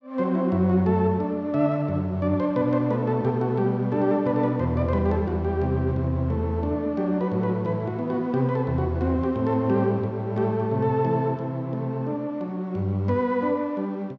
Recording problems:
none

